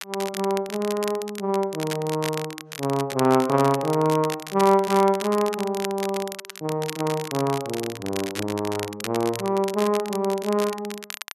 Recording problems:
crackle; vinyl, SNR 11 dB

